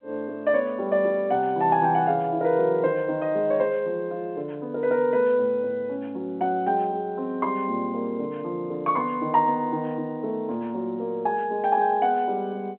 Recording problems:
telephone audio; 220 Hz to 3.8 kHz, G.711

